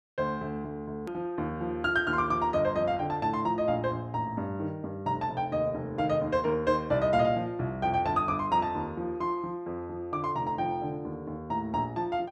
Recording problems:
hard cut with a click; at 1 s

